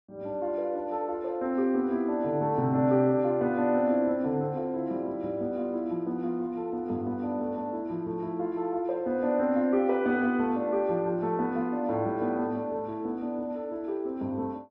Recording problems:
none

